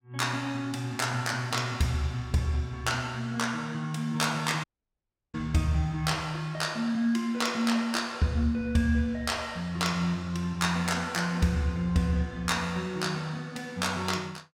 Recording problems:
audio cutting out; at 4.5 s for 0.5 s

